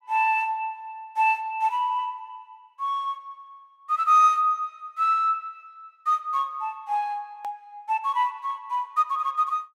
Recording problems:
click at an edit; at 7.5 s

